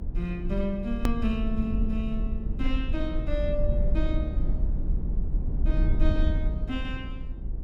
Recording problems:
low-frequency rumble; below 62 Hz, SNR -3 dB
click at an edit; at 1 s

